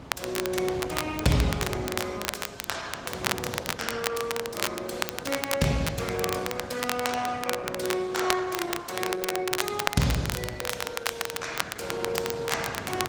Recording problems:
lossy codec; Opus, log-spectral distance 4 dB, nothing above 19 kHz
wind noise; below 890 Hz, SNR 12 dB
crackling; vinyl, SNR 2 dB

